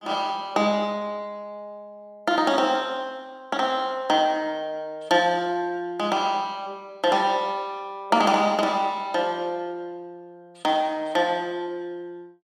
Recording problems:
none

